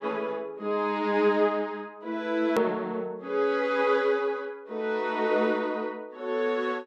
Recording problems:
edit click; at 2.5 s

